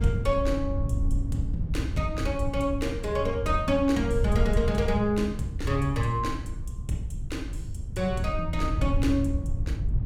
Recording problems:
wind noise; below 96 Hz, SNR 3 dB

